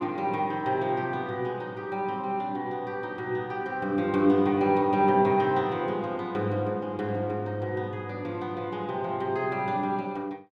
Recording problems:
none

